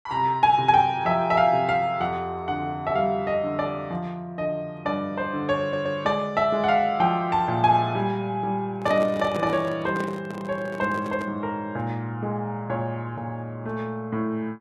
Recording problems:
audio stuttering; at 5.5 s
microphone handling noise; from 8.5 to 11 s; peak -4 dB vs average level

